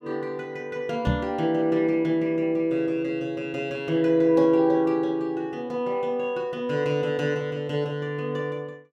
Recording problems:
knock on the microphone; at 1 s; peak +5 dB vs average level

